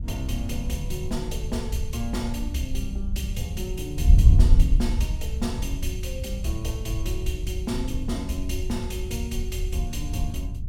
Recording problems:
wind noise; below 76 Hz, SNR -5 dB

